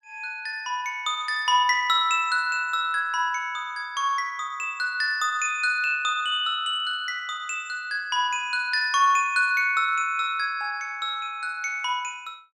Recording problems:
none

